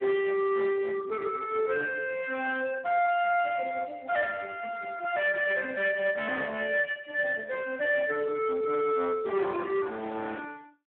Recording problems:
telephone audio; 340 Hz to 3.5 kHz, Speex
distortion; hard clipping, uneven, signal-to-distortion ratio 12 dB

